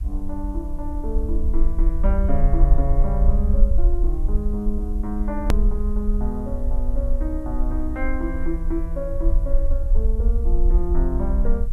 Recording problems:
hiss; slope -4 dB per octave, SNR 29 dB
low-frequency rumble; below 50 Hz, strongest tone 22 Hz, SNR -5 dB
hard cut with a click; at 5.5 s

